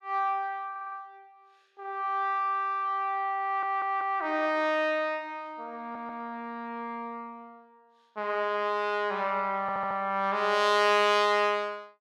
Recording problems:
stutter; 4 times, first at 0.5 s

